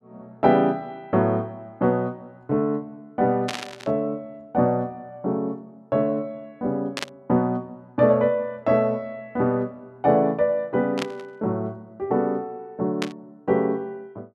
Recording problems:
static burst; 4 times, first at 3.5 s; peak 0 dB vs average level

